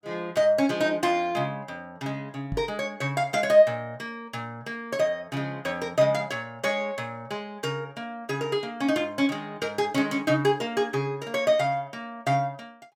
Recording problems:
knock on the microphone; at 2.5 s; peak -3 dB vs average level

